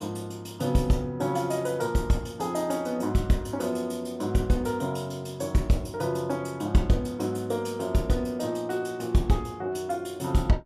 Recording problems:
none

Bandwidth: 14.5 kHz